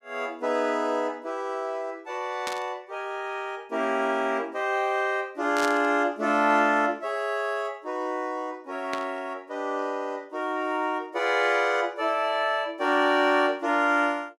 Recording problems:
burst of static; at 2.5 s, at 5.5 s and at 9 s; peak -2 dB vs average level

